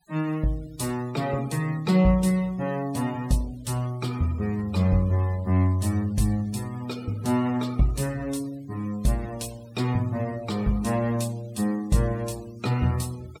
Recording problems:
noise reduction artefacts; signal-to-artefact ratio 23 dB

